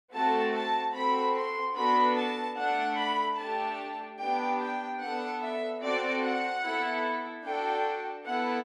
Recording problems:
none

